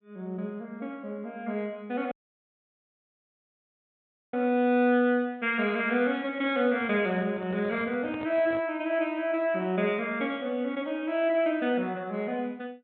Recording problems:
treble cut off; nothing above 4 kHz
dropout; at 2 s for 2 s
microphone handling noise; from 7 to 8.5 s; peak -8 dB vs average level

